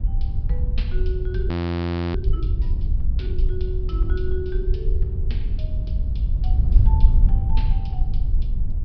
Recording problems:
low-pass filter; nothing above 5.5 kHz
wind on the microphone; below 66 Hz, SNR -12 dB
frozen audio; at 1.5 s for 0.5 s

